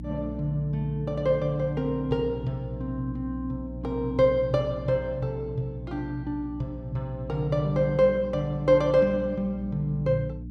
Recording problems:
electrical hum; 60 Hz, harmonics up to 300 Hz, SNR 11 dB

